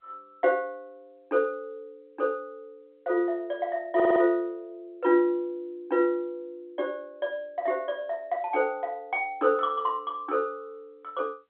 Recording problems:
phone line; 240 Hz to 3.9 kHz, G.711
audio stuttering; at 4 s

